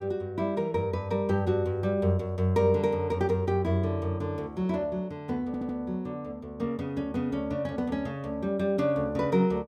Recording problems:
stutter; at 5.5 s

